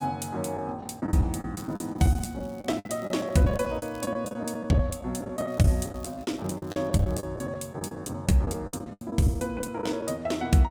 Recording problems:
lost packets; 16% of the sound replaced, filled with the last packet
crackle; from 1.5 to 4 s and from 5.5 to 7 s; loose cable, SNR 27 dB

